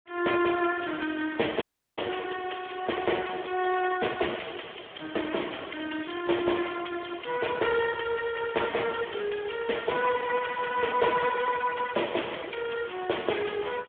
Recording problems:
telephone audio; 260 Hz to 3.4 kHz, Speex
dropout; at 1.5 s

